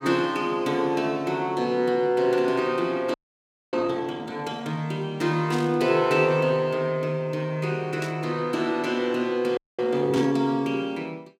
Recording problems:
frozen audio; at 3 s for 0.5 s and at 9.5 s
burst of static; at 5.5 s, at 8 s and at 10 s; peak -7 dB vs average level

